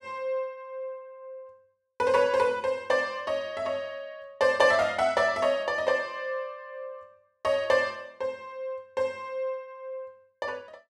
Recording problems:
none

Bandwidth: 13 kHz